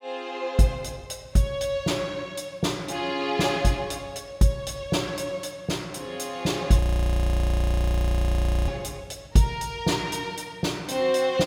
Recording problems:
frozen audio; at 7 s for 2 s

